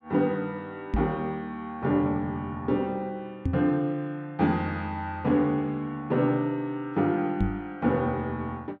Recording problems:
microphone bump; at 1 s, at 3.5 s and at 7.5 s; peak +4 dB vs average level

